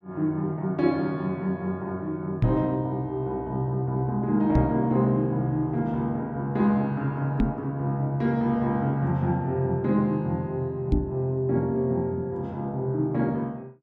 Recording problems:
knock on the microphone; 4 times, first at 2.5 s; peak +7 dB vs average level

